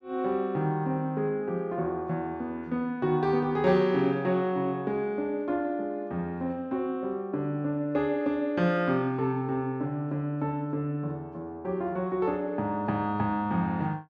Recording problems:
none

